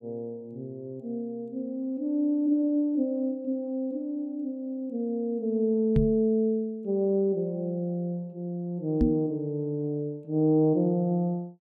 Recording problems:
knock on the microphone; at 6 s and at 9 s; peak +7 dB vs average level

